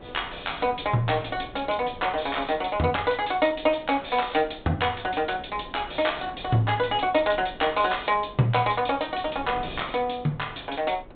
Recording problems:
low-pass filter; nothing above 4 kHz
wind noise; below 520 Hz, SNR 19 dB

